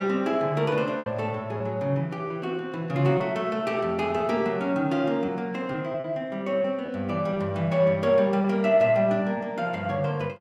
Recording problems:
packet loss; 3% of the sound replaced, filled with repeated pitch periods

